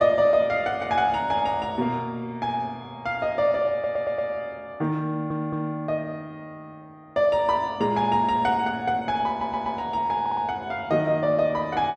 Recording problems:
stutter; 4 times, first at 3.5 s

